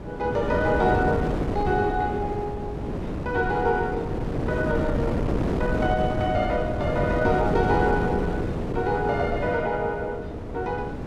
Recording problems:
wind on the microphone; below 420 Hz, SNR 2 dB

